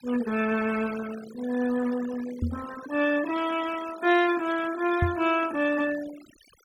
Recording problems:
noise reduction artefacts; signal-to-artefact ratio 15 dB
microphone bump; at 2.5 s and at 5 s; peak +4 dB vs average level

